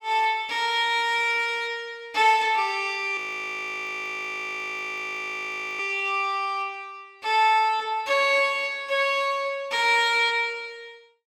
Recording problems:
audio freezing; at 3 s for 2.5 s

